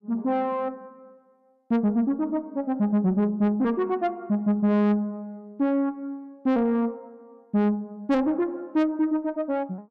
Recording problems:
distorted audio; soft clipping, signal-to-distortion ratio 10 dB

